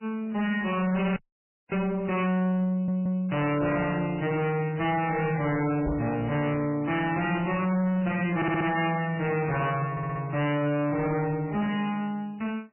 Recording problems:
lossy compression; MP3, log-spectral distance 4 dB, nothing above 2.9 kHz
distortion; soft clipping, signal-to-distortion ratio 8 dB
dropout; at 1 s for 0.5 s
audio stuttering; at 2.5 s, at 8.5 s and at 10 s
microphone thump; at 6 s; peak -1 dB vs average level

